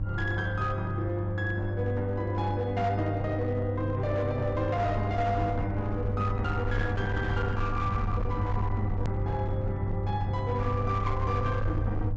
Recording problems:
treble missing; nothing above 8 kHz
distorted audio; hard clipping, signal-to-distortion ratio 12 dB
hum; 50 Hz, harmonics up to 500 Hz, SNR 1 dB
low-frequency rumble; below 92 Hz, SNR 6 dB
click at an edit; at 9 s

